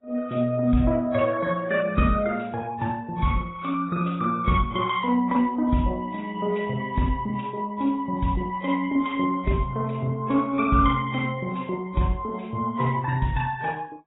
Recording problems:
lossy codec; MP2, then AAC, log-spectral distance 3 dB, nothing above 3.4 kHz

